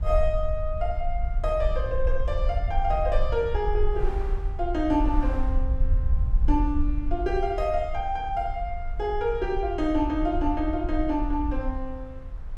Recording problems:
rumble; below 56 Hz, SNR 2 dB
wind on the microphone; below 1.1 kHz, SNR 22 dB

